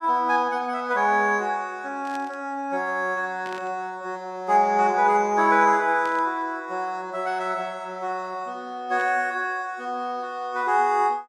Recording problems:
burst of static; 4 times, first at 2 s; peak -13 dB vs average level

